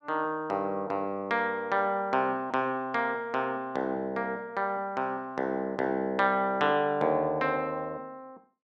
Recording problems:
none

